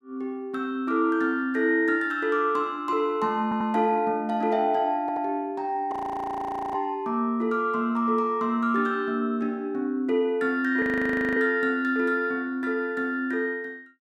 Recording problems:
stutter; at 3.5 s and at 5 s
frozen audio; at 6 s for 1 s and at 11 s for 0.5 s

